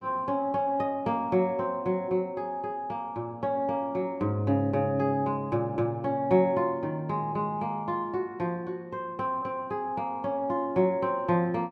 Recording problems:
none

